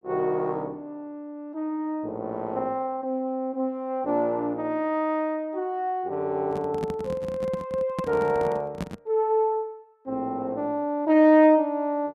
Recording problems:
microphone handling noise; from 6.5 to 9 s; peak -2 dB vs average level

